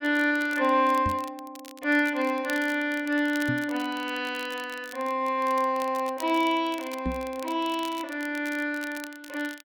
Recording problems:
crackling; vinyl, SNR 19 dB
knock on the microphone; at 1 s, at 3.5 s and at 7 s; peak 0 dB vs average level

